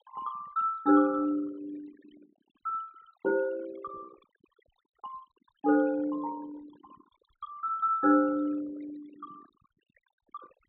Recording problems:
treble missing; nothing above 4 kHz
noise reduction artefacts; signal-to-artefact ratio 21 dB

